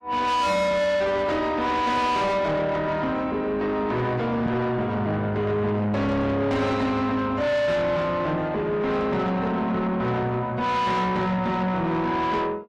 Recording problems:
codec artefacts; AAC, log-spectral distance 2 dB, nothing above 13.1 kHz
distorted audio; soft clipping, signal-to-distortion ratio 8 dB

